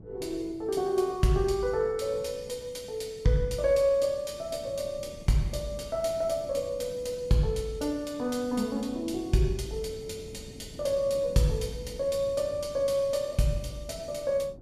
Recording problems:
wind on the microphone; below 280 Hz, SNR 19 dB

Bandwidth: 14.5 kHz